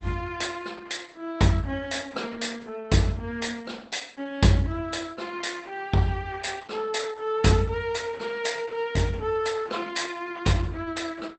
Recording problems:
codec artefacts; Opus, log-spectral distance 5 dB, nothing above 8.2 kHz

